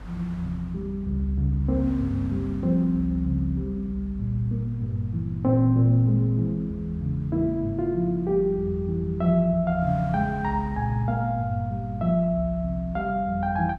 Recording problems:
hum; 50 Hz, harmonics up to 300 Hz, SNR 18 dB
wind on the microphone; below 1.2 kHz, SNR 27 dB

